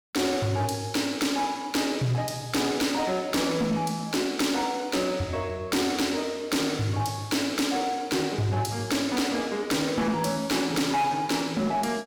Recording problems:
distortion; hard clipping, signal-to-distortion ratio 11 dB

